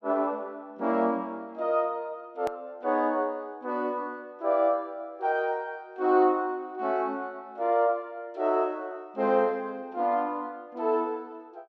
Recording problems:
edit click; at 2.5 s

